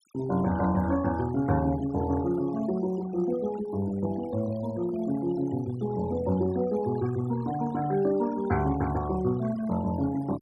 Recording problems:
denoising artefacts; signal-to-artefact ratio 18 dB

